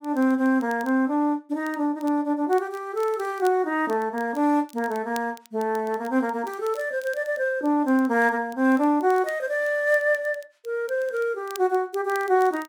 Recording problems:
crackling; vinyl, SNR 25 dB

